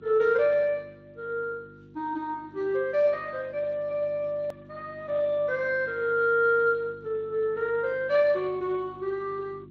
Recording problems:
lossy codec; Speex, log-spectral distance 2 dB
hum; 50 Hz, harmonics up to 350 Hz, SNR 22 dB
hard cut with a click; at 4.5 s

